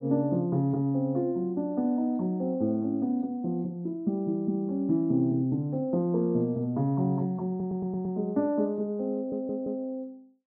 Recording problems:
audio stuttering; at 7.5 s and at 9 s

